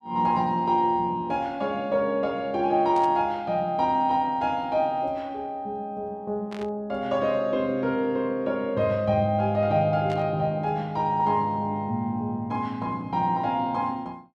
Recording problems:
burst of static; at 3 s, at 6.5 s and at 10 s; peak -12 dB vs average level

